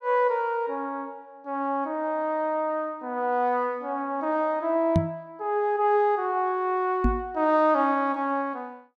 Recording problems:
microphone thump; at 5 s and at 7 s; peak +7 dB vs average level

